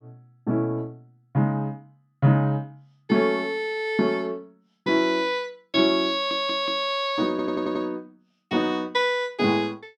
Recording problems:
stutter; at 6 s and at 7.5 s

